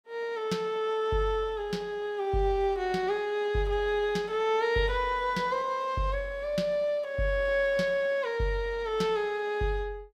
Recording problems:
none

